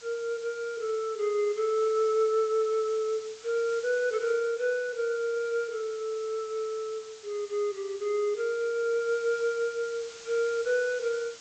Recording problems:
low-pass filter; nothing above 8 kHz
hiss; slope +1 dB per octave, SNR 18 dB

